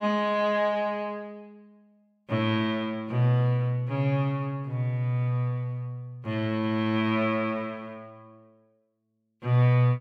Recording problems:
none

